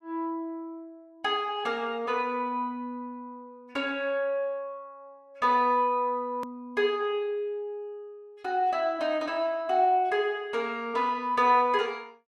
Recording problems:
click at an edit; at 6.5 s

